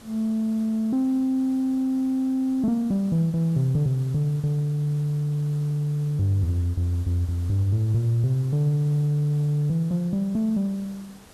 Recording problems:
hiss; slope -4 dB per octave, SNR 25 dB

